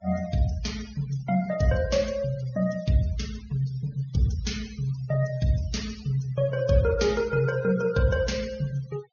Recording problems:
low-pass filter; nothing above 6.7 kHz
noise reduction artefacts; signal-to-artefact ratio 18 dB

